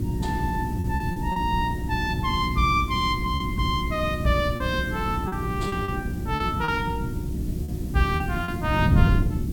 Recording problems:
hum; 60 Hz, harmonics up to 360 Hz, SNR 6 dB
background hiss; slope +1 dB per octave, SNR 21 dB
wind on the microphone; below 190 Hz, SNR 3 dB
lost packets; 6% of the sound replaced, filled with repeated pitch periods

